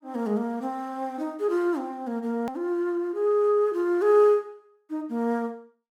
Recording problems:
hard cut with a click; at 2.5 s

